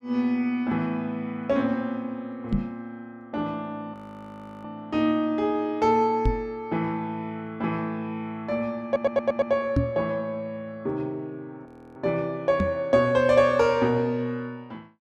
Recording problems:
microphone bump; 4 times, first at 2.5 s; peak +6 dB vs average level
audio freezing; at 4 s for 0.5 s and at 12 s
audio stuttering; at 9 s

